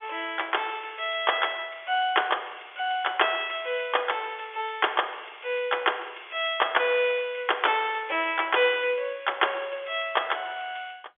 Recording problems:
telephone audio; 280 Hz to 3.5 kHz, G.711

